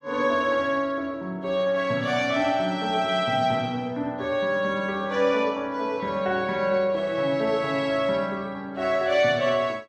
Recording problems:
none

